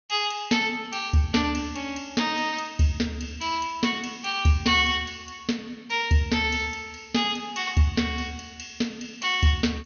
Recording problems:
low-pass filter; nothing above 6.4 kHz

